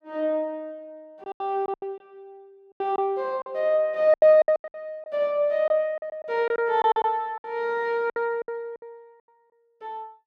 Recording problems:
lost packets; 12% of the sound replaced, filled with silence

